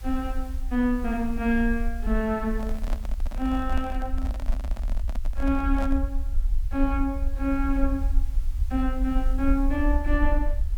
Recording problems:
hiss; slope -1 dB per octave, SNR 26 dB
rumble; below 54 Hz, SNR 2 dB
handling noise; from 2.5 to 6 s; peak -5 dB vs average level

